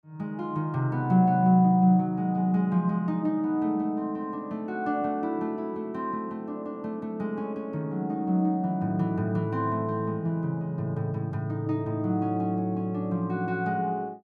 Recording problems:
none

